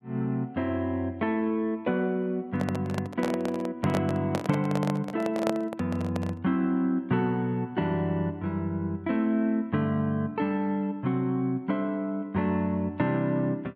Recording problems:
handling noise; from 2.5 to 6.5 s; peak +1 dB vs average level

